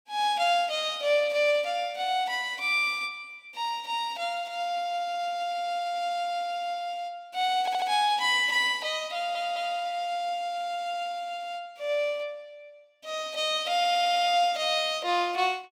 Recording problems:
stutter; at 7.5 s, at 9 s and at 14 s

